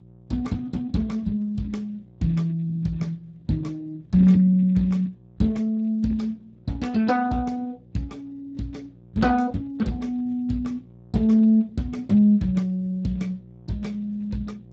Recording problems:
lossy compression; Speex, log-spectral distance 2 dB, nothing above 17.1 kHz
hum; 60 Hz, harmonics up to 720 Hz, SNR 25 dB

